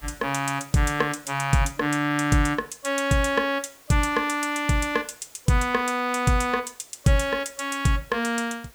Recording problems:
hiss; slope -2 dB per octave, SNR 26 dB

